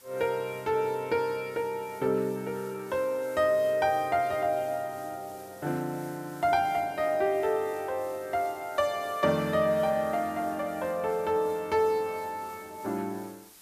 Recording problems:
background hiss; slope 0 dB per octave, SNR 22 dB

